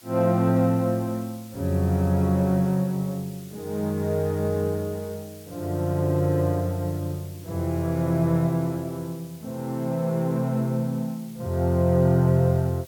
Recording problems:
background hiss; slope +1 dB per octave, SNR 23 dB

